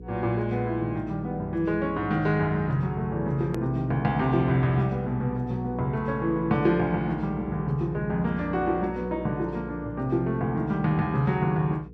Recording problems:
electrical hum; 60 Hz, harmonics up to 480 Hz, SNR 15 dB
hard cut with a click; at 3.5 s

